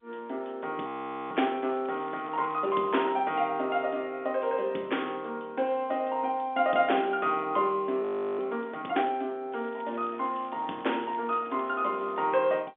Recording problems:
telephone audio; 240 Hz to 3.6 kHz, G.711
crackle; from 1 to 3 s and from 9.5 to 12 s; loose cable, SNR 28 dB
audio freezing; at 1 s and at 8 s

